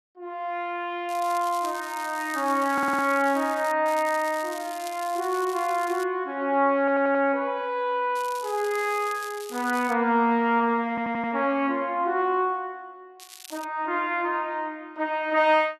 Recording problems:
crackle; 4 times, first at 1 s; loose cable, SNR 17 dB
stutter; at 2.5 s, at 7 s and at 11 s

